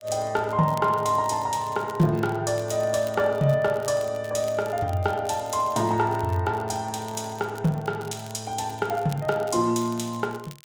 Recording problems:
crackling; vinyl, SNR 23 dB

